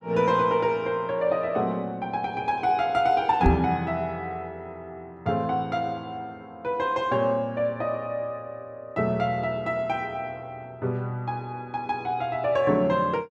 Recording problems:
microphone thump; at 3.5 s; peak +7 dB vs average level

